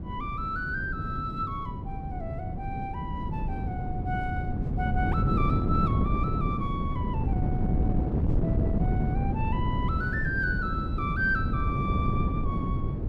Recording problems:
wind on the microphone; below 200 Hz, SNR -4 dB

